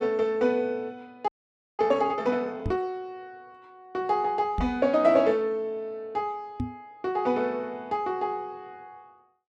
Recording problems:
frozen audio; at 1.5 s for 0.5 s
microphone thump; at 2.5 s, at 4.5 s and at 6.5 s; peak 0 dB vs average level

